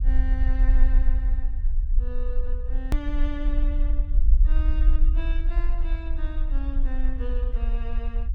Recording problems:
rumble; below 46 Hz, SNR -13 dB
click at an edit; at 3 s

